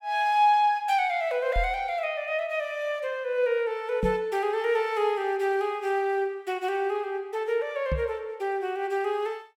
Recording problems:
knock on the microphone; at 1.5 s, at 4 s and at 8 s; peak +1 dB vs average level

